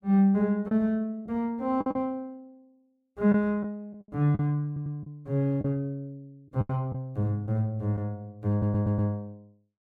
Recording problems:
lost packets; 6% of the sound replaced, filled with the last packet
audio stuttering; at 4.5 s and at 8.5 s

